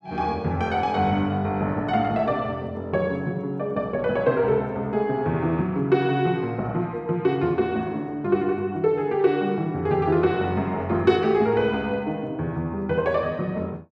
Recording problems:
none

